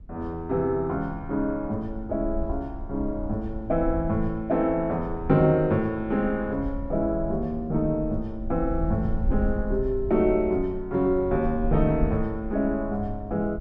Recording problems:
rumble; below 66 Hz, SNR 10 dB

